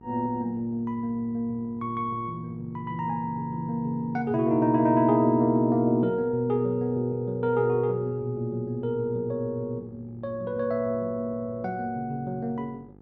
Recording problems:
electrical hum; 50 Hz, harmonics up to 1.3 kHz, SNR 24 dB

